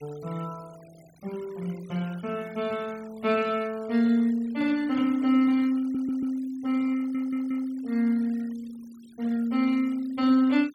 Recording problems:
noise reduction artefacts; signal-to-artefact ratio 25 dB
audio stuttering; at 6 s and at 7 s

